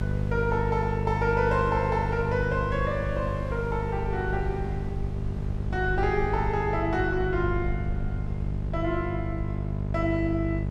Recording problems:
hum; 50 Hz, harmonics up to 850 Hz, SNR 3 dB
rumble; below 84 Hz, SNR 9 dB
wind on the microphone; below 1.3 kHz, SNR 21 dB

